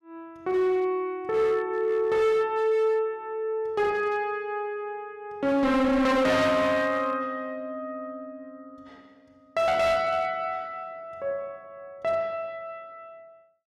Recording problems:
distorted audio; hard clipping, signal-to-distortion ratio 8 dB

